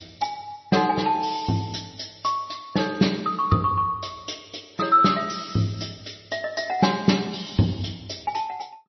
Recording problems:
lossy codec; MP3, log-spectral distance 9 dB, nothing above 5.8 kHz

